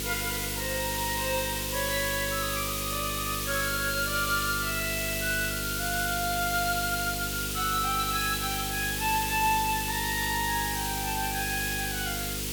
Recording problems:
hum; 50 Hz, harmonics up to 500 Hz, SNR 8 dB
hiss; slope +2 dB per octave, SNR 1 dB

